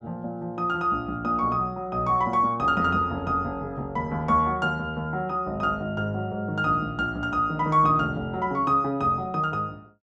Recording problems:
none

